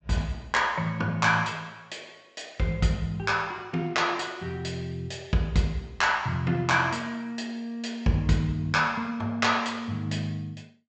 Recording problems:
treble cut off; nothing above 8 kHz

